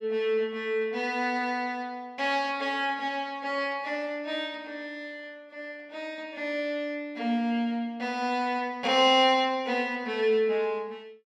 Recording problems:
none

